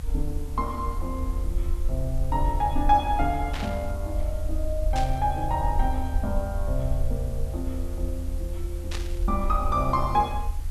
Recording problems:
background hiss; slope -3 dB per octave, SNR 20 dB
low-frequency rumble; below 74 Hz, SNR 2 dB
burst of static; at 3.5 s, at 5 s and at 9 s; peak -2 dB vs average level

